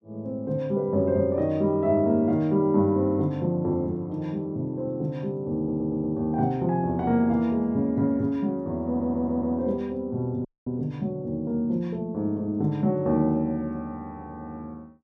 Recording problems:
stutter; at 5.5 s and at 9 s
audio cutting out; at 10 s

